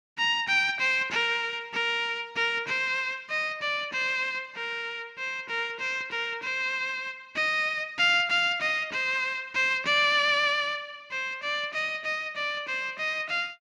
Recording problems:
none

